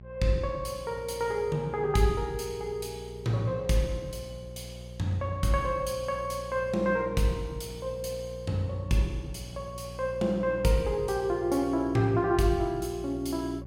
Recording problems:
electrical hum; 60 Hz, harmonics up to 600 Hz, SNR 14 dB

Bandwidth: 16 kHz